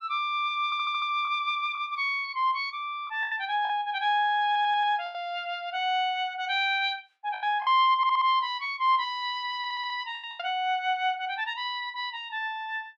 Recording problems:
packet loss; 5% of the sound replaced, filled with the last packet
audio stuttering; 4 times, first at 0.5 s

